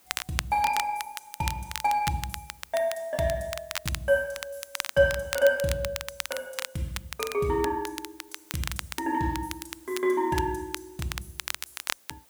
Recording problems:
hiss; slope -2 dB per octave, SNR 27 dB
crackling; vinyl, SNR 8 dB

